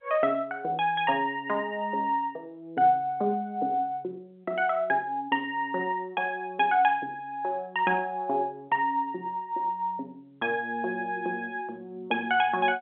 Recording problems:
telephone audio; 220 Hz to 3.4 kHz, G.711

